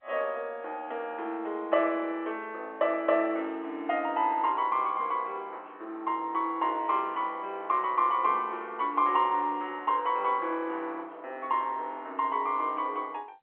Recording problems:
telephone audio; 280 Hz to 3.6 kHz, G.711

